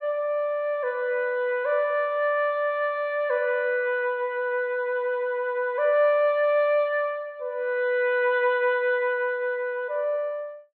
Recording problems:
treble missing; nothing above 4.2 kHz

